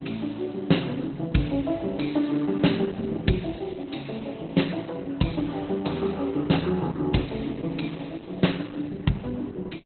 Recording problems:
lossy codec; Opus, log-spectral distance 5 dB, nothing above 4.1 kHz

